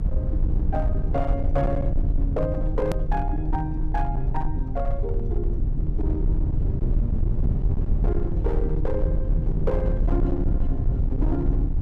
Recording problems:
distortion; hard clipping, uneven, signal-to-distortion ratio 10 dB
low-frequency rumble; below 76 Hz, SNR -3 dB
edit click; at 3 s

